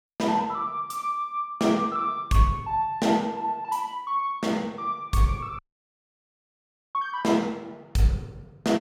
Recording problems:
audio cutting out; at 5.5 s for 1.5 s

